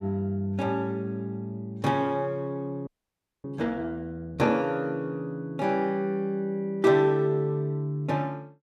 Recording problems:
audio freezing; at 3 s for 0.5 s

